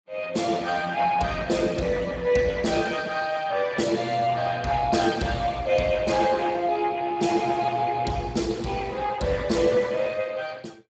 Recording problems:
codec artefacts; Speex, log-spectral distance 5 dB, nothing above 7.8 kHz

